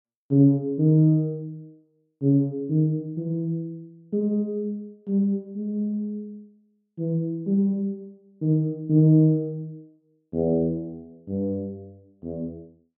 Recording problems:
none

